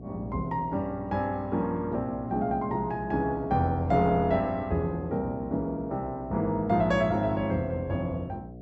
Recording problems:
hum; 60 Hz, harmonics up to 720 Hz, SNR 15 dB

